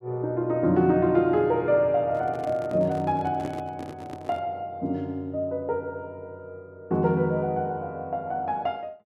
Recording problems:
microphone handling noise; from 2 to 4.5 s; peak -5 dB vs average level

